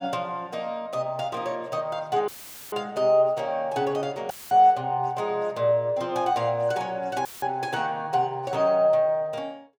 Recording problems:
audio cutting out; at 2.5 s, at 4.5 s and at 7.5 s; filled with static

